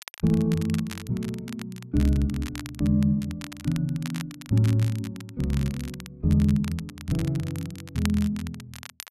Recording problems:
crackle; vinyl, SNR 16 dB

